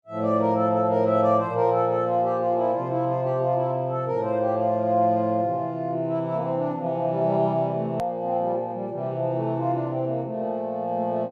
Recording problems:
edit click; at 8 s

